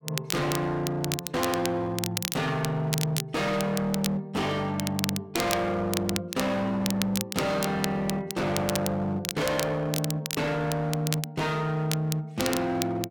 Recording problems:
distortion; hard clipping, signal-to-distortion ratio 8 dB
crackle; vinyl, SNR 6 dB

